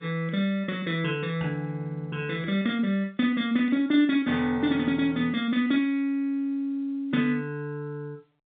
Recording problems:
phone line; 190 Hz to 3.7 kHz, G.711

